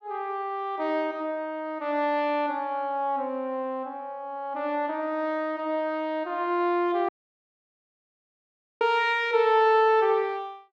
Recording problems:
dropout; at 7 s for 1.5 s

